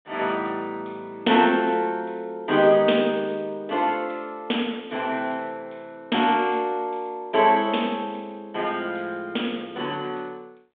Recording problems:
phone line; 190 Hz to 3.6 kHz, G.726

